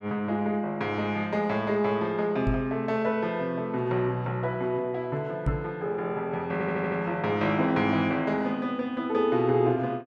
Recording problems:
microphone bump; at 2.5 s and at 5.5 s; peak +3 dB vs average level
stutter; at 6.5 s

